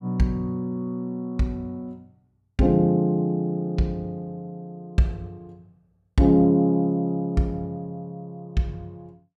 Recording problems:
none

